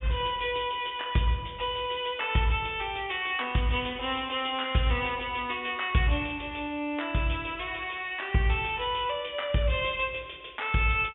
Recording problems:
treble cut off; nothing above 3.6 kHz

